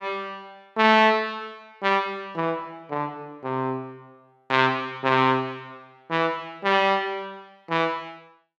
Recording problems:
none

